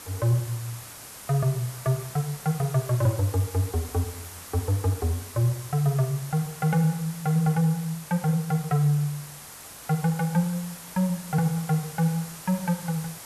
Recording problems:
background hiss; slope -1 dB per octave, SNR 14 dB

